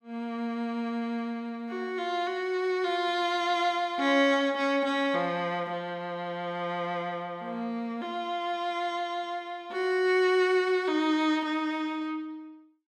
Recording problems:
none

